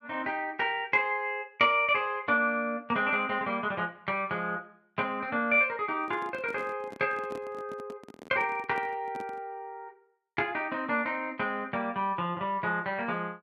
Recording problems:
handling noise; from 6 to 9.5 s; peak -10 dB vs average level

